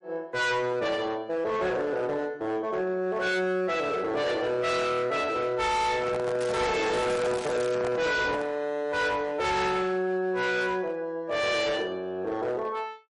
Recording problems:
lossy codec; MP3, log-spectral distance 2 dB, nothing above 10.4 kHz
distorted audio; hard clipping, signal-to-distortion ratio 8 dB
microphone handling noise; from 6 to 8.5 s; peak -3 dB vs average level
crackling; from 6.5 to 7.5 s; loose cable, SNR 13 dB

